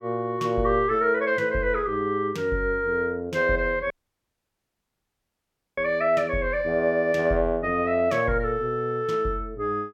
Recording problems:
audio cutting out; at 4 s for 2 s

